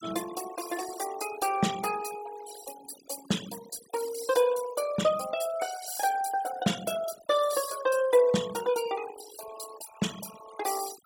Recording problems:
denoising artefacts; signal-to-artefact ratio 12 dB

